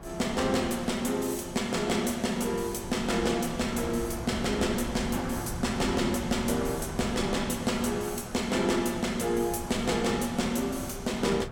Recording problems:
wind on the microphone; below 530 Hz, SNR 11 dB

